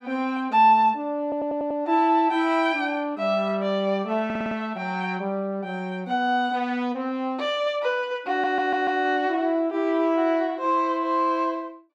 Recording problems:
stutter; at 1 s, at 4.5 s and at 8.5 s

